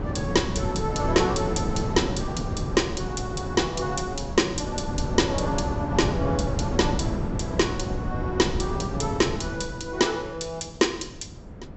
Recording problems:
low-pass filter; nothing above 7.8 kHz
wind on the microphone; below 280 Hz, SNR 3 dB

